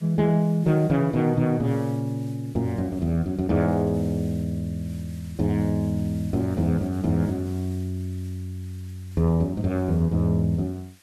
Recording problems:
background hiss; slope 0 dB per octave, SNR 27 dB

